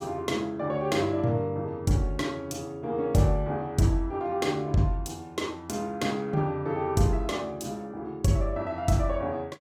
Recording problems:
none

